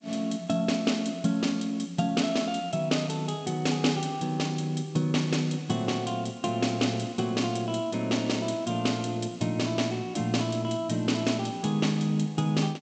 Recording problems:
codec artefacts; G.722, log-spectral distance 5 dB, nothing above 7.8 kHz

